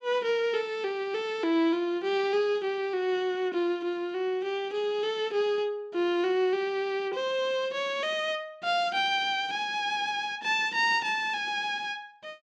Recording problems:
none

